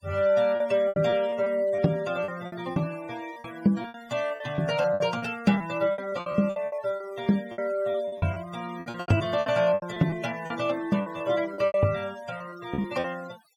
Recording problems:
denoising artefacts; signal-to-artefact ratio 19 dB
packet loss; 15% of the sound replaced, filled with repeated pitch periods

